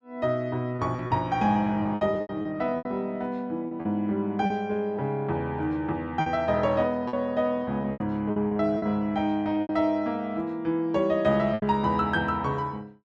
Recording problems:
lost packets; 8% of the sound replaced, filled with repeated pitch periods

